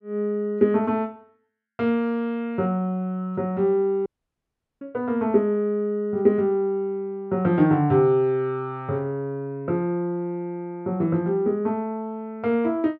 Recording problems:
audio cutting out; at 4 s for 1 s

